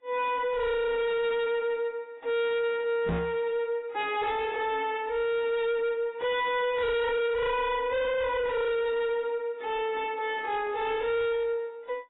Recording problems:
lossy codec; AAC, log-spectral distance 2 dB, nothing above 3.8 kHz
distortion; soft clipping, signal-to-distortion ratio 6 dB
microphone bump; at 3 s; peak +3 dB vs average level

